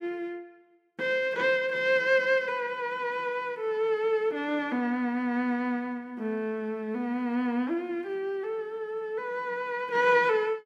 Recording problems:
none

